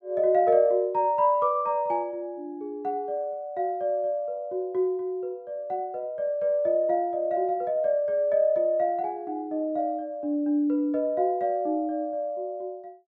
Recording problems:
none

